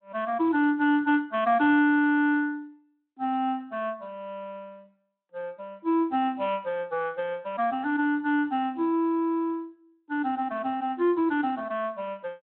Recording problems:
phone line; 240 Hz to 3.4 kHz, Speex

